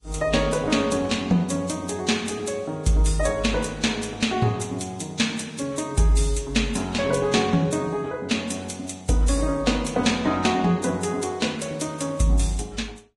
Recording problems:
lossy compression; Vorbis, log-spectral distance 4 dB, nothing above 11 kHz

